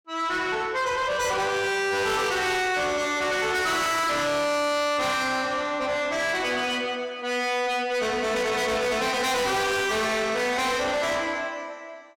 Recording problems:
distorted audio; soft clipping, signal-to-distortion ratio 6 dB

